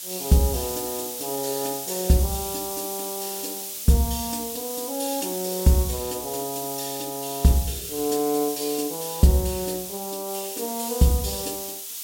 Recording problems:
background hiss; SNR 5 dB

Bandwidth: 16.5 kHz